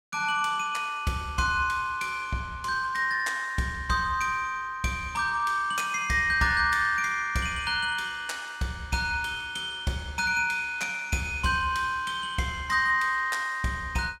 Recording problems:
none

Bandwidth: 16 kHz